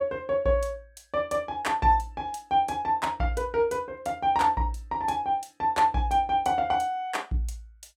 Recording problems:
none

